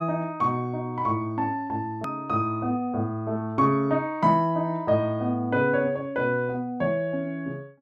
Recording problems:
edit click; at 2 s

